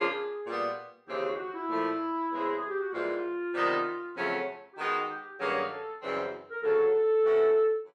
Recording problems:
none

